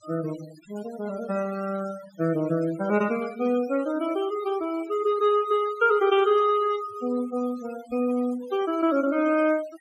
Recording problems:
noise reduction artefacts; signal-to-artefact ratio 18 dB

